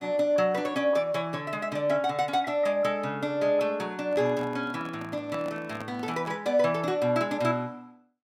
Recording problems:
handling noise; from 4 to 6.5 s; peak -8 dB vs average level

